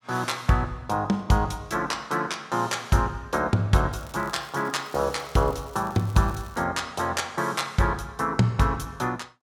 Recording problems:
crackling; from 4 to 6.5 s; loose cable, SNR 24 dB

